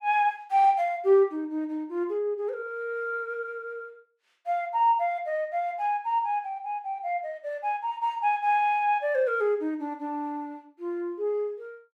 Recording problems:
none

